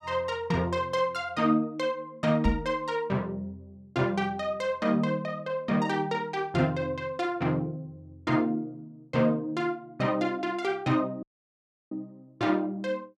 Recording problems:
microphone bump; at 2.5 s; peak +6 dB vs average level
audio cutting out; at 11 s for 0.5 s

